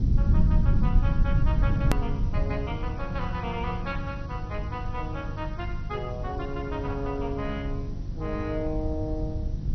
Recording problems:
codec artefacts; MP2, log-spectral distance 2 dB, nothing above 14.1 kHz
hum; 50 Hz, harmonics up to 500 Hz, SNR 5 dB
hiss; SNR 23 dB
rumble; below 110 Hz, SNR -4 dB
edit click; at 2 s

